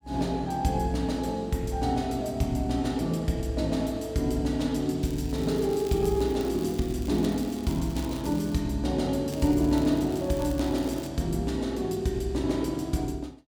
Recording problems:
crackle; from 5 to 8.5 s and from 9.5 to 11 s; loose cable, SNR 19 dB

